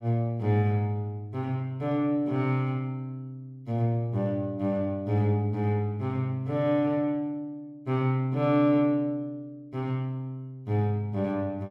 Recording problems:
none

